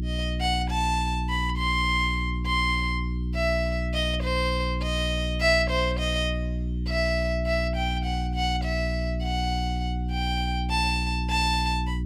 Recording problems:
electrical hum; 60 Hz, harmonics up to 360 Hz, SNR 2 dB

